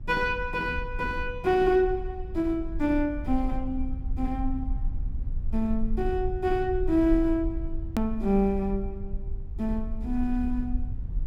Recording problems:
low-frequency rumble; below 56 Hz, SNR 8 dB
click at an edit; at 8 s

